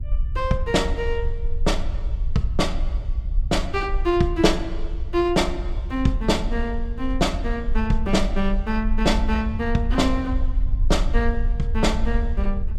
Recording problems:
low-frequency rumble; below 54 Hz, SNR 3 dB

